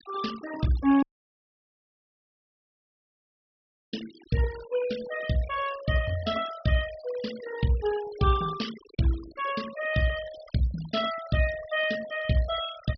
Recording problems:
low-pass filter; nothing above 5.5 kHz
noise reduction artefacts; signal-to-artefact ratio 14 dB
dropout; at 1 s for 3 s

